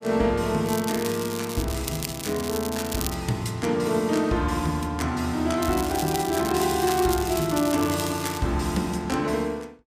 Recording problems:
crackling; from 0.5 to 3 s and from 5.5 to 8.5 s; loose cable, SNR 9 dB

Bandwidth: 15 kHz